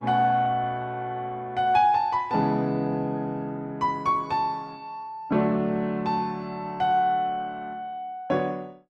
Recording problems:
codec artefacts; Opus, log-spectral distance 2 dB

